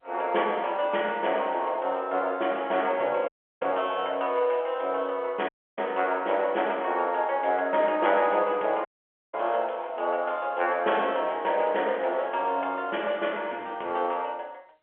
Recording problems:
telephone audio; 320 Hz to 3.3 kHz, G.711
audio cutting out; at 3.5 s, at 5.5 s and at 9 s

